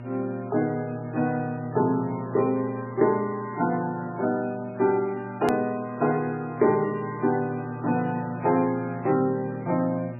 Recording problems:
lossy codec; MP3, log-spectral distance 3 dB, nothing above 13.1 kHz
hum; 60 Hz, harmonics up to 1.6 kHz, SNR 13 dB
hard cut with a click; at 5.5 s

